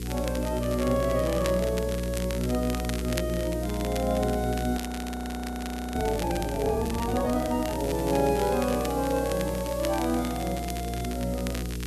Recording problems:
hum; 60 Hz, harmonics up to 480 Hz, SNR 5 dB
hiss; slope +3 dB per octave, SNR 16 dB
crackle; vinyl, SNR 12 dB
frozen audio; at 5 s for 1 s

